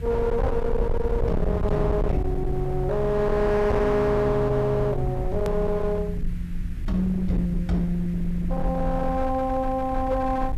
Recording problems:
distorted audio; hard clipping, uneven, signal-to-distortion ratio 8 dB
hum; 50 Hz, harmonics up to 350 Hz, SNR 18 dB
background hiss; SNR 28 dB
rumble; below 98 Hz, SNR 6 dB
click at an edit; at 5.5 s

